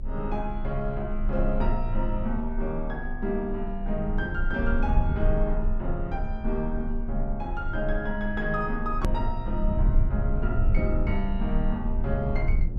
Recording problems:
rumble; below 52 Hz, strongest tone 26 Hz, SNR 0 dB
click at an edit; at 9 s

